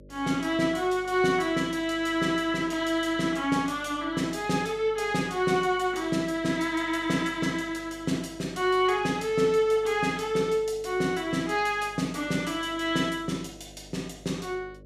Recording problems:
hum; 50 Hz, harmonics up to 600 Hz, SNR 24 dB

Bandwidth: 14.5 kHz